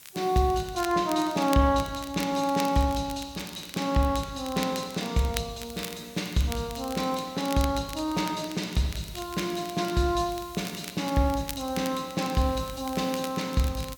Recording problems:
background hiss; slope +1 dB per octave, SNR 23 dB
crackling; vinyl, SNR 14 dB

